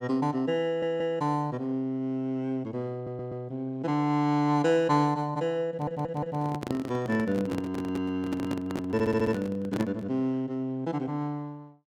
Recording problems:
audio stuttering; 4 times, first at 0.5 s
microphone handling noise; from 5.5 to 10 s; peak +1 dB vs average level

